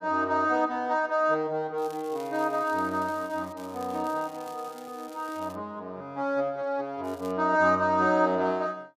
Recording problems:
crackling; from 2 to 3.5 s, from 3.5 to 5.5 s and at 7 s; loose cable, SNR 24 dB

